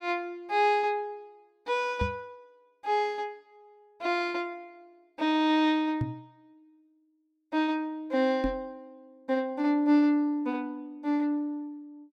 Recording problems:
knock on the microphone; at 2 s, at 6 s and at 8.5 s; peak +1 dB vs average level

